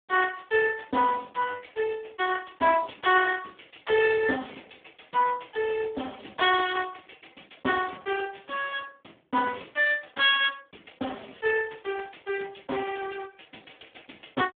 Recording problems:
phone line; 240 Hz to 3.5 kHz, Speex

